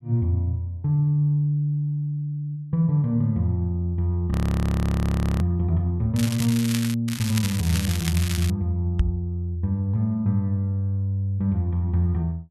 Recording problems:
audio freezing; at 4.5 s for 1 s
crackle; at 6 s and from 7 to 8.5 s; loose cable, SNR 8 dB
knock on the microphone; at 9 s; peak +5 dB vs average level

